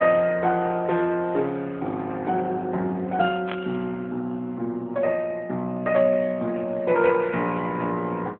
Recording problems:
telephone audio; 150 Hz to 3.4 kHz, AMR-NB
burst of static; at 3.5 s; peak -4 dB vs average level

